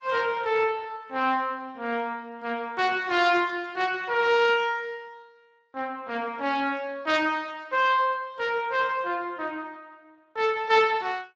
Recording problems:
lossy compression; AAC, then Speex, log-spectral distance 3 dB

